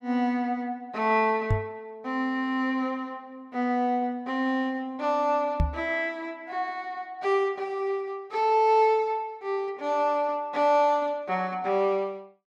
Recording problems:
microphone thump; at 1.5 s and at 5.5 s; peak +5 dB vs average level

